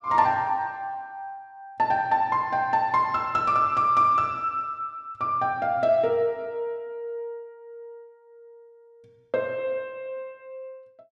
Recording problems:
none

